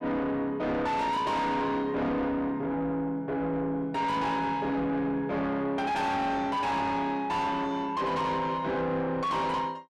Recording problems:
distortion; soft clipping, signal-to-distortion ratio 7 dB

